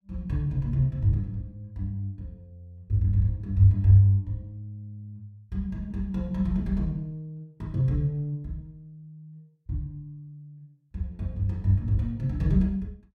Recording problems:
none

